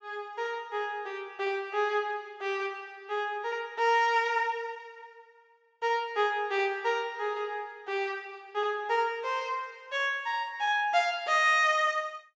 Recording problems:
treble cut off; nothing above 8 kHz

